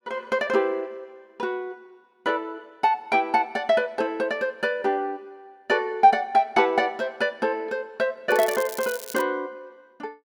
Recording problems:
crackle; at 8.5 s; loose cable, SNR 12 dB

